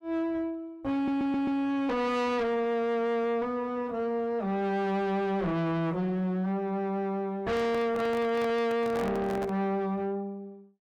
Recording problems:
distortion; soft clipping, signal-to-distortion ratio 7 dB
stutter; at 1 s
handling noise; from 7.5 to 9.5 s; peak -3 dB vs average level

